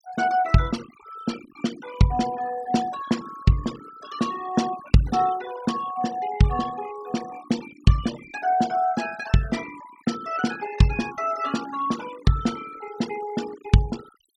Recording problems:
noise reduction artefacts; signal-to-artefact ratio 16 dB

